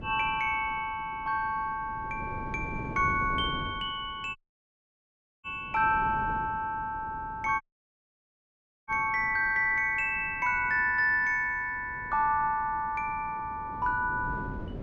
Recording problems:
wind noise; below 320 Hz, SNR 15 dB
audio cutting out; at 4.5 s for 1 s and at 7.5 s for 1.5 s

